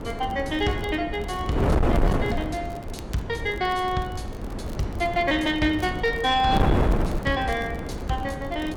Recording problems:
distortion; soft clipping, signal-to-distortion ratio 11 dB
wind on the microphone; below 420 Hz, SNR 3 dB
crackling; vinyl, SNR 25 dB

